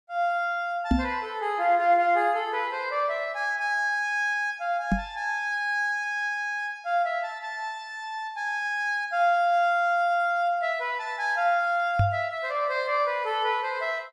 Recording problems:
microphone thump; at 1 s, at 5 s and at 12 s; peak +6 dB vs average level

